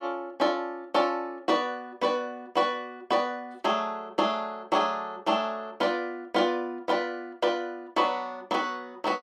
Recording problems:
none

